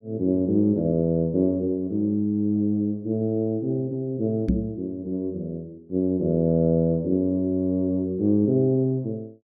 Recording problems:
microphone bump; at 4.5 s; peak +4 dB vs average level

